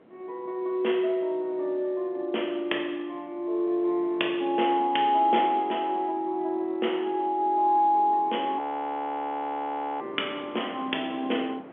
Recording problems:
phone line; 240 Hz to 3.4 kHz, G.711
wind on the microphone; below 830 Hz, SNR 21 dB
audio freezing; at 8.5 s for 1.5 s

